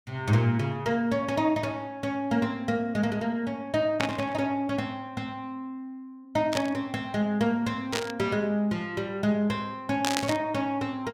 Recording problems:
static burst; 4 times, first at 4 s; peak +4 dB vs average level

